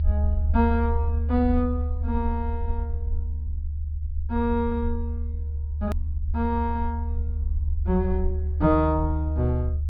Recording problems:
treble missing; nothing above 4.9 kHz
rumble; below 76 Hz, strongest tone 74 Hz, SNR 1 dB
click at an edit; at 6 s

